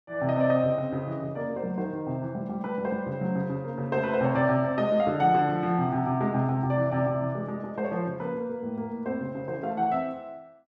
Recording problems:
none

